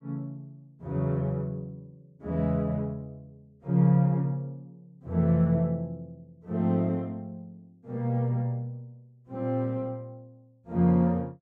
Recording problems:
none

